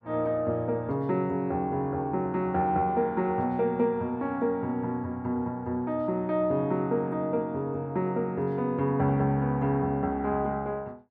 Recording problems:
none

